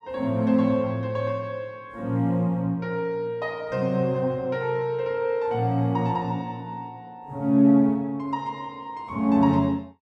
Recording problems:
none

